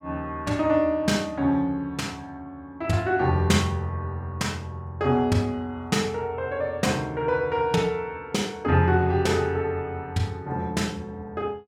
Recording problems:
none

